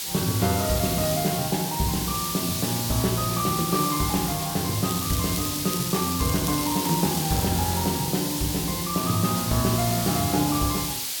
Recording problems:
hiss; slope +3 dB per octave, SNR 2 dB
crackle; from 5 to 7.5 s; loose cable, SNR 8 dB

